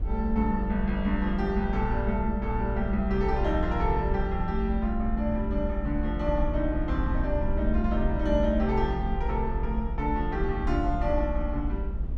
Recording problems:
low-frequency rumble; below 62 Hz, SNR 3 dB

